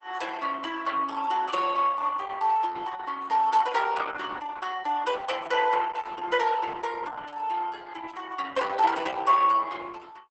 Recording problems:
lossy compression; Opus, log-spectral distance 4 dB, nothing above 8.2 kHz

